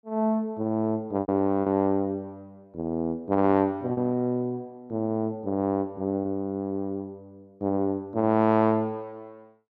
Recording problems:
lost packets; 2% of the sound replaced, filled with repeated pitch periods

